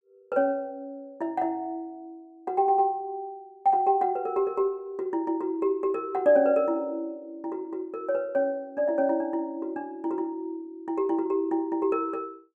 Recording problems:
none

